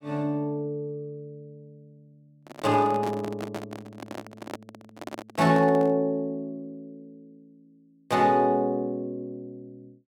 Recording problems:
microphone handling noise; from 2.5 to 6 s; peak -5 dB vs average level

